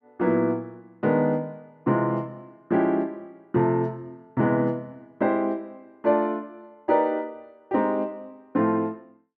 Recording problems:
none

